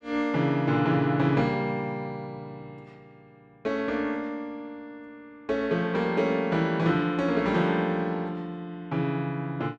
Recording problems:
none

